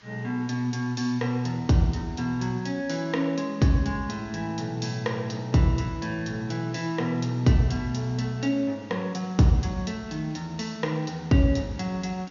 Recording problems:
treble missing; nothing above 6.9 kHz
background hiss; SNR 27 dB

